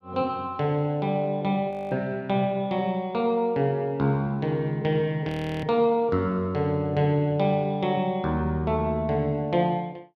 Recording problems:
audio freezing; at 1.5 s and at 5.5 s

